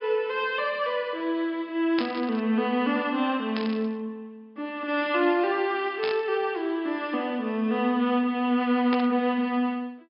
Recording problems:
low-pass filter; nothing above 5.3 kHz
burst of static; 4 times, first at 2 s; peak -3 dB vs average level

